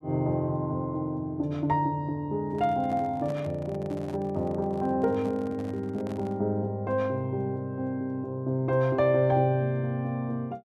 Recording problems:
handling noise; from 2.5 to 6.5 s; peak -9 dB vs average level

